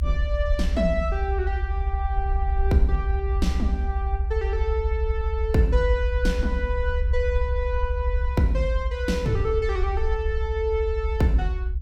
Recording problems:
rumble; below 70 Hz, SNR 0 dB

